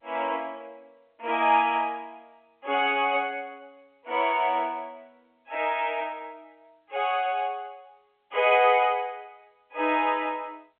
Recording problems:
telephone audio; 280 Hz to 3.3 kHz, G.711

